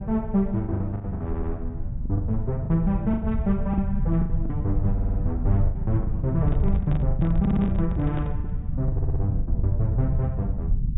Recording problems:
treble cut off; nothing above 4 kHz
rumble; below 100 Hz, SNR 2 dB
lost packets; 12% of the sound replaced, filled with the last packet
audio stuttering; 4 times, first at 1.5 s
handling noise; from 6.5 to 8.5 s; peak -7 dB vs average level

